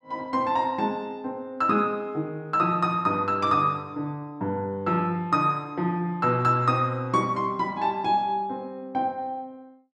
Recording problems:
none

